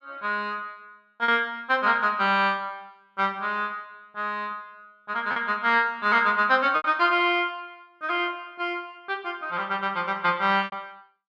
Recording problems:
lost packets; 3% of the sound replaced, filled with repeated pitch periods

